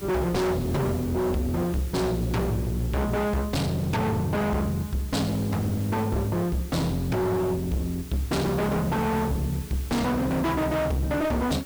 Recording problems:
distortion; hard clipping, uneven, signal-to-distortion ratio 5 dB
hum; 60 Hz, harmonics up to 420 Hz, SNR 21 dB
hiss; slope 0 dB per octave, SNR 17 dB

